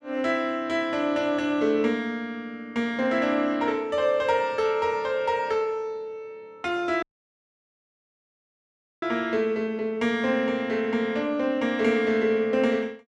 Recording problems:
dropout; at 7 s for 2 s

